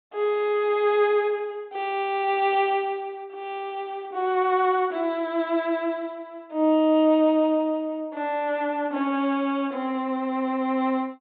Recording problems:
treble missing; nothing above 4 kHz

